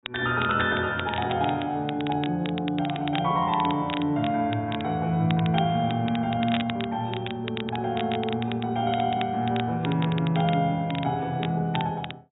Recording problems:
treble cut off; nothing above 4 kHz
crackle; vinyl, SNR 12 dB

